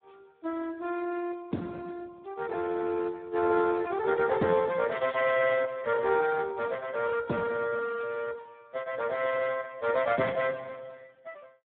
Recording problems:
telephone audio; 190 Hz to 2.6 kHz, Speex
crackle; at 5 s; loose cable, SNR 22 dB

